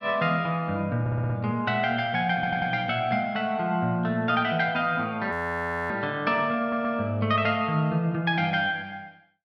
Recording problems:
stutter; at 1 s, at 2.5 s and at 6.5 s
frozen audio; at 5.5 s for 0.5 s

